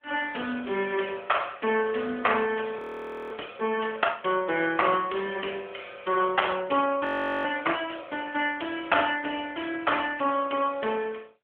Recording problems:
telephone audio; 240 Hz to 3.4 kHz, AMR-NB
audio freezing; at 3 s for 0.5 s and at 7 s

